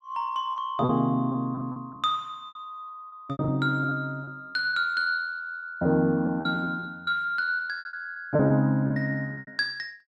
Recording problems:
lost packets; 14% of the sound replaced, filled with repeated pitch periods

